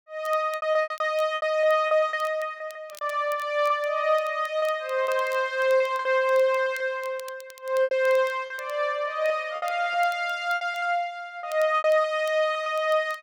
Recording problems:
crackle; vinyl, SNR 26 dB
packet loss; 11% of the sound replaced, filled with repeated pitch periods

